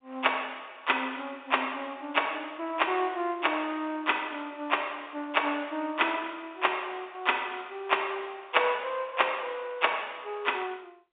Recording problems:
telephone audio; 150 Hz to 3.7 kHz, G.711

